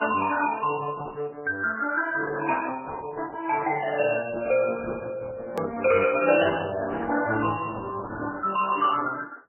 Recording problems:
codec artefacts; Opus, then MP3, log-spectral distance 5 dB, nothing above 2.4 kHz
hard cut with a click; at 5.5 s

